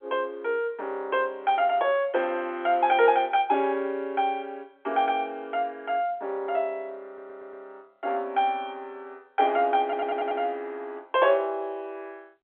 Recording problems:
telephone audio; 300 Hz to 3.5 kHz, G.711
audio stuttering; at 7 s and at 10 s

